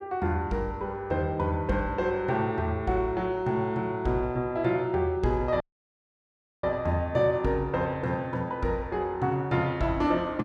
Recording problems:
audio cutting out; at 5.5 s for 1 s

